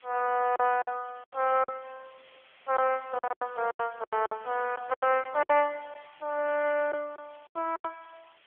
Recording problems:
telephone audio; 340 Hz to 3.1 kHz, AMR-NB
background hiss; SNR 27 dB
packet loss; 11% of the sound replaced, filled with silence

